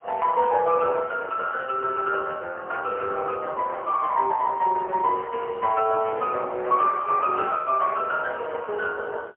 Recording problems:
phone line; 340 Hz to 3.6 kHz, AMR-NB, then MP3

